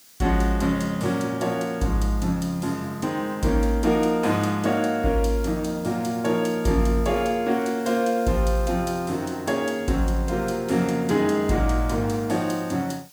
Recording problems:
background hiss; slope +1 dB per octave, SNR 23 dB

